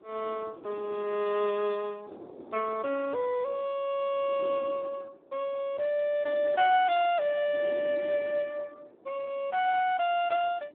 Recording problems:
telephone audio; 260 Hz to 3.7 kHz, Speex
wind noise; below 530 Hz, SNR 19 dB

